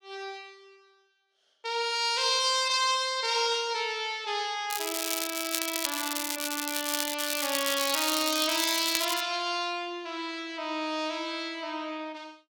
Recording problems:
crackling; from 4.5 to 9 s; loose cable, SNR 2 dB

